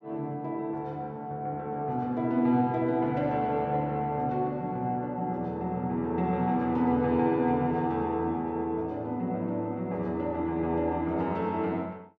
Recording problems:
none

